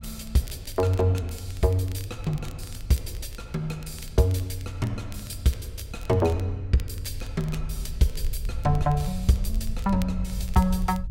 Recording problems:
rumble; below 66 Hz, SNR 9 dB
crackle; vinyl, SNR 22 dB

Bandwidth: 16 kHz